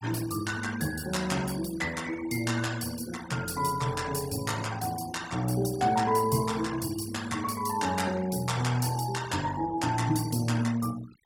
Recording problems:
denoising artefacts; signal-to-artefact ratio 15 dB

